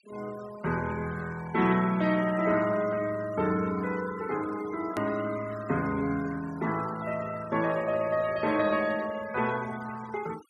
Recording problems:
denoising artefacts; signal-to-artefact ratio 18 dB
edit click; at 5 s

